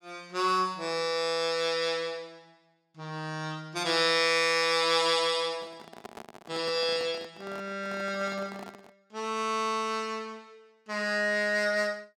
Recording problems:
handling noise; from 5.5 to 9 s; peak -10 dB vs average level

